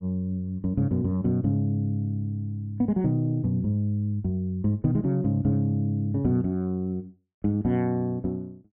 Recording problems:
treble cut off; nothing above 3.3 kHz

